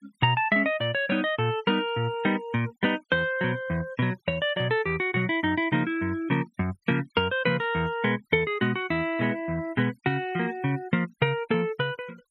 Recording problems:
noise reduction artefacts; signal-to-artefact ratio 26 dB

